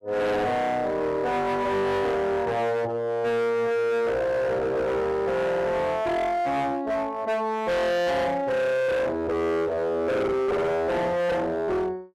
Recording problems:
distorted audio; hard clipping, uneven, signal-to-distortion ratio 6 dB

